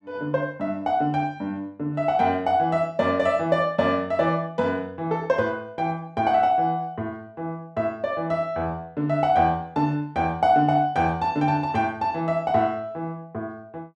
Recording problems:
none

